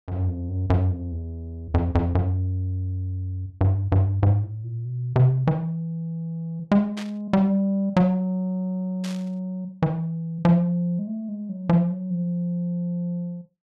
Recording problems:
static burst; at 7 s and at 9 s; peak -8 dB vs average level

